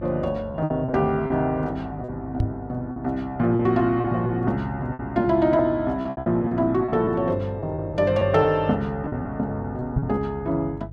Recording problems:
hum; 50 Hz, harmonics up to 450 Hz, SNR 16 dB
lost packets; 9% of the sound replaced, filled with repeated pitch periods
knock on the microphone; at 2.5 s and at 10 s; peak +4 dB vs average level

